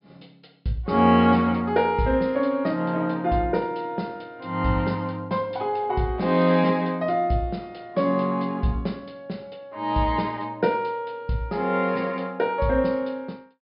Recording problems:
low-pass filter; nothing above 5.5 kHz

